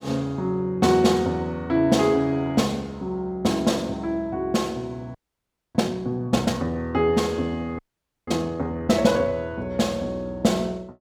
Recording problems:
audio freezing; at 5 s for 0.5 s and at 8 s

